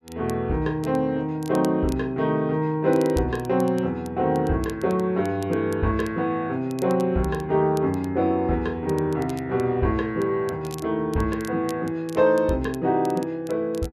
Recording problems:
crackle; vinyl, SNR 23 dB

